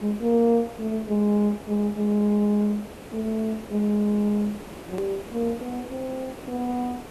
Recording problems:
background hiss; slope -7 dB per octave, SNR 16 dB
edit click; at 5 s

